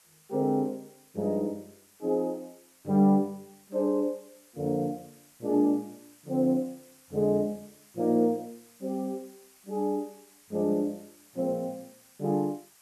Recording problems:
hiss; slope +1 dB per octave, SNR 27 dB

